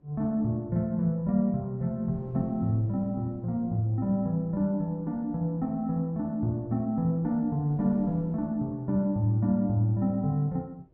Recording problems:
wind on the microphone; below 340 Hz, SNR 25 dB

